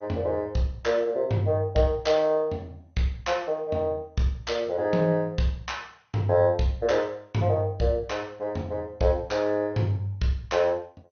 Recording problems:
lossy compression; MP2, log-spectral distance 2 dB, nothing above 6.3 kHz

